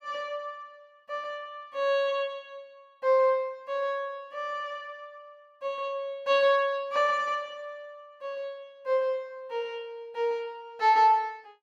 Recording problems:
none

